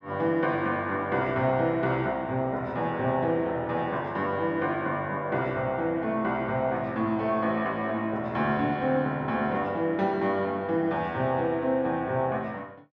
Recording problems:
none

